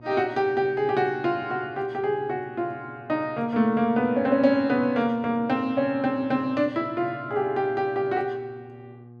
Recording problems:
hum; 60 Hz, harmonics up to 840 Hz, SNR 22 dB

